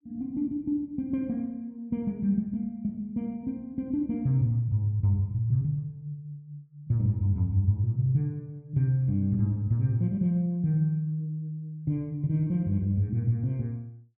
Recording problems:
none

